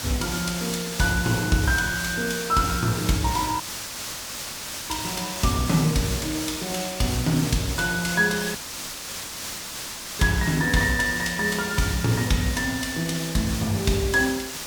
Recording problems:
background hiss; slope 0 dB per octave, SNR 7 dB
audio cutting out; at 3.5 s for 1.5 s and at 8.5 s for 1.5 s

